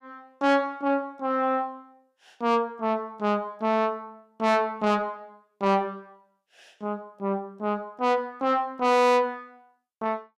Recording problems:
distortion; soft clipping, signal-to-distortion ratio 7 dB

